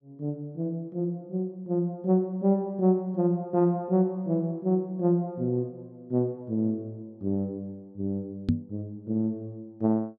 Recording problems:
microphone thump; at 8.5 s; peak +7 dB vs average level

